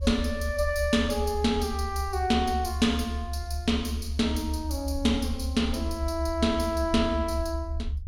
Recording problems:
low-frequency rumble; below 74 Hz, strongest tone 74 Hz, SNR 5 dB

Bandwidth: 16.5 kHz